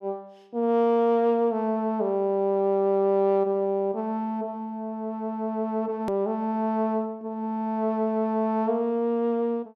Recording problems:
click at an edit; at 6 s

